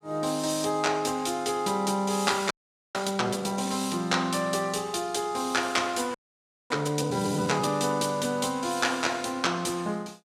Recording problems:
frozen audio; at 2.5 s and at 6 s for 0.5 s

